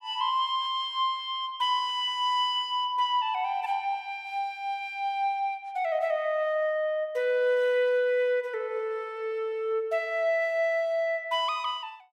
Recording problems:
none

